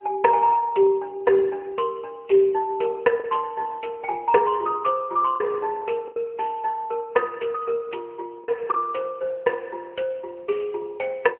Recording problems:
telephone audio; 340 Hz to 3.1 kHz, AMR-NB
packet loss; 2% of the sound replaced, filled with the last packet

